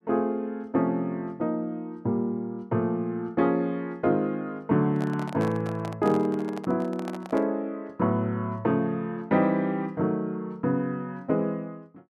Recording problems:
microphone handling noise; from 5 to 7.5 s; peak -6 dB vs average level

